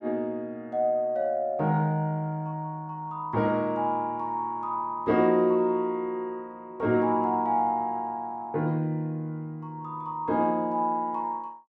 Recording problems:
none

